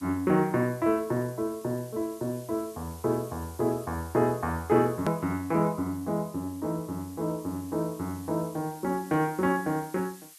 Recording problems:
background hiss; slope +5 dB per octave, SNR 20 dB
click at an edit; at 5 s

